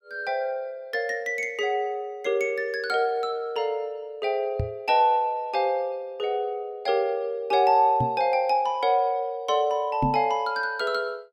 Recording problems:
microphone bump; at 4.5 s, at 8 s and at 10 s; peak +2 dB vs average level

